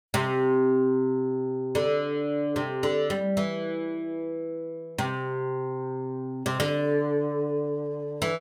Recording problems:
none

